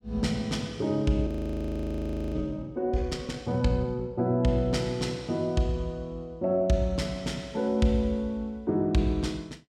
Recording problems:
audio freezing; at 1.5 s for 1 s

